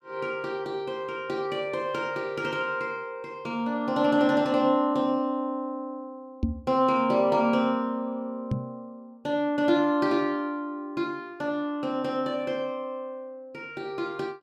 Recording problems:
knock on the microphone; at 6.5 s and at 8.5 s; peak +5 dB vs average level

